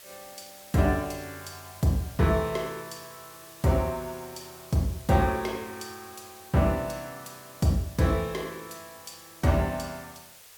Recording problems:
background hiss; SNR 19 dB

